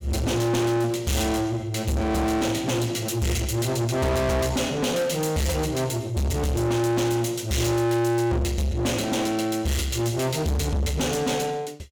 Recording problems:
distortion; soft clipping, signal-to-distortion ratio 6 dB

